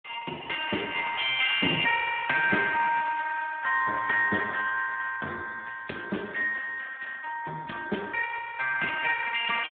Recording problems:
telephone audio; 950 Hz to 2.1 kHz, Speex

